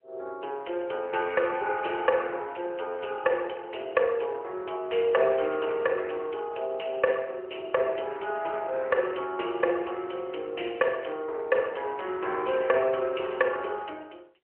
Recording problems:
phone line; 320 Hz to 3.1 kHz, AMR-NB

